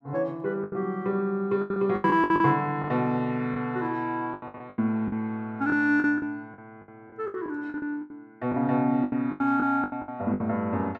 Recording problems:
lost packets; 15% of the sound replaced, filled with the last packet

